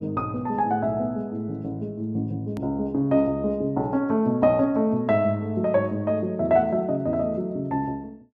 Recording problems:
edit click; at 2.5 s

